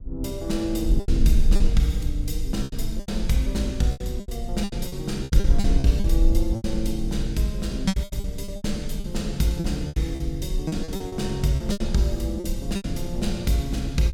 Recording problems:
wind noise; below 48 Hz, SNR 3 dB
lost packets; 13% of the sound replaced, filled with repeated pitch periods

